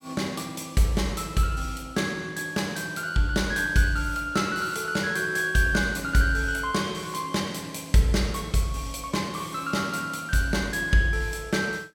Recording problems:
none

